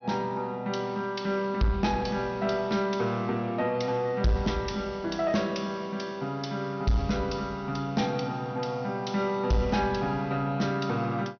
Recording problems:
treble cut off; nothing above 6.2 kHz
distortion; soft clipping, signal-to-distortion ratio 11 dB

